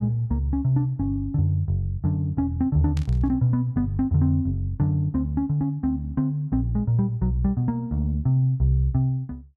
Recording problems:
burst of static; at 3 s; peak -12 dB vs average level

